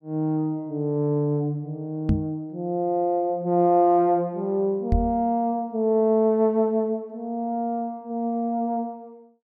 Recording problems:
microphone thump; at 2 s and at 5 s; peak +5 dB vs average level

